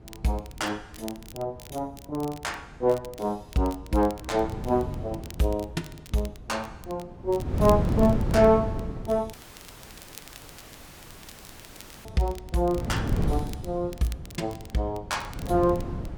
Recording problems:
wind noise; below 230 Hz, SNR 3 dB
crackling; vinyl, SNR 21 dB
dropout; at 9.5 s for 2.5 s

